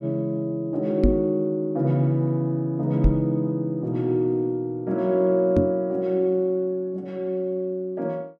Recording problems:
knock on the microphone; at 1 s, at 3 s and at 5.5 s; peak +6 dB vs average level

